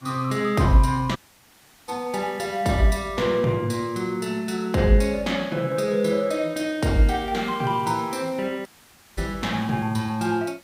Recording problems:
background hiss; slope -1 dB per octave, SNR 27 dB
dropout; at 1 s for 0.5 s and at 8.5 s for 0.5 s

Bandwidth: 15.5 kHz